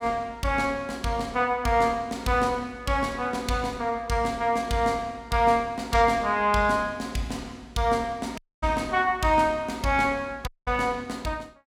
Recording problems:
audio cutting out; at 8.5 s and at 10 s

